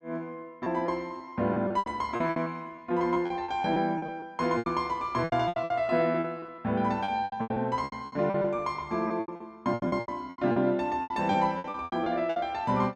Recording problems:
packet loss; 17% of the sound replaced, filled with repeated pitch periods

